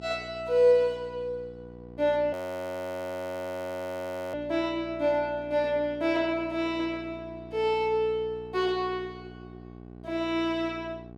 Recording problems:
electrical hum; 60 Hz, harmonics up to 1.1 kHz, SNR 17 dB
audio freezing; at 2.5 s for 2 s

